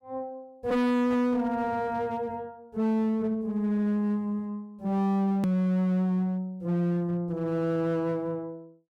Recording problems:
distortion; hard clipping, uneven, signal-to-distortion ratio 6 dB
hard cut with a click; at 5.5 s

